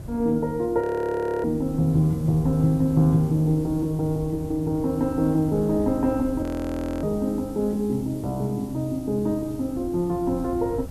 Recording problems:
background hiss; slope 0 dB per octave, SNR 27 dB
wind on the microphone; below 160 Hz, SNR 15 dB
frozen audio; at 1 s for 0.5 s and at 6.5 s for 0.5 s

